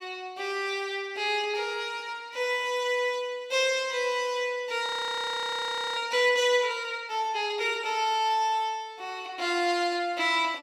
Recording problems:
audio freezing; at 5 s for 1 s

